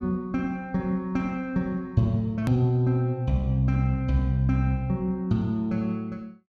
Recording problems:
click at an edit; at 2.5 s

